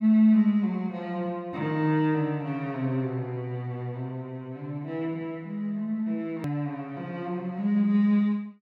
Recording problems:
edit click; at 6.5 s

